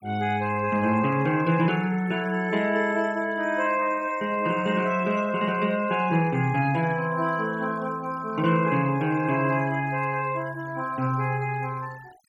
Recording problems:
denoising artefacts; signal-to-artefact ratio 23 dB

